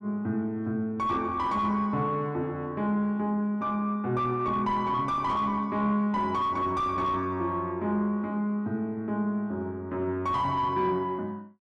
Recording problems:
distortion; soft clipping, signal-to-distortion ratio 10 dB

